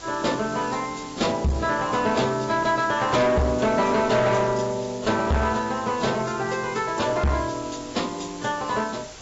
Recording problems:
treble missing; nothing above 7.6 kHz
lossy compression; AAC, log-spectral distance 11 dB
distortion; hard clipping, uneven, signal-to-distortion ratio 7 dB
background hiss; slope -2 dB per octave, SNR 16 dB

